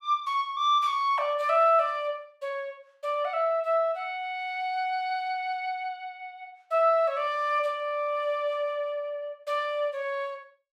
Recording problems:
none

